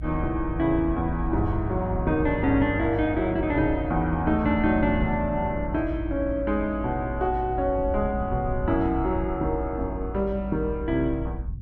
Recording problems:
rumble; below 92 Hz, strongest tone 56 Hz, SNR 8 dB

